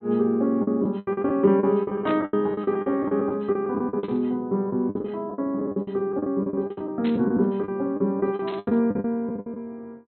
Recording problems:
low-pass filter; nothing above 4.1 kHz
packet loss; 17% of the sound replaced, filled with the last packet
burst of static; 4 times, first at 2 s; peak -7 dB vs average level

